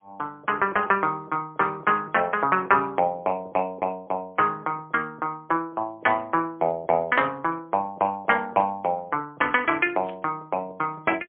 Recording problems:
telephone audio; 300 Hz to 3.3 kHz, AMR-NB, then MP3
burst of static; at 8.5 s and at 10 s; peak -12 dB vs average level

